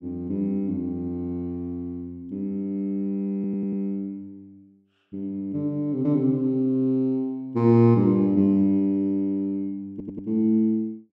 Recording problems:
audio stuttering; at 3.5 s and at 10 s

